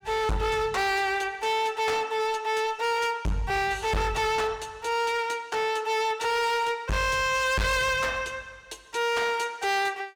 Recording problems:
distorted audio; hard clipping, signal-to-distortion ratio 6 dB

